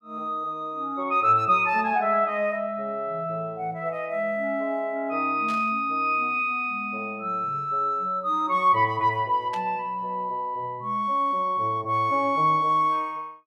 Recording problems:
burst of static; at 5.5 s and at 9.5 s; peak -11 dB vs average level

